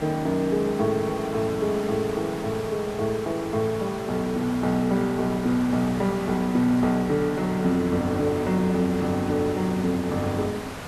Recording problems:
hiss; SNR 12 dB

